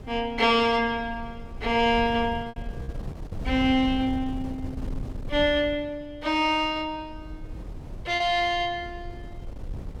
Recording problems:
wind noise; below 130 Hz, SNR 14 dB
packet loss; 1.6% of the sound replaced, filled with repeated pitch periods

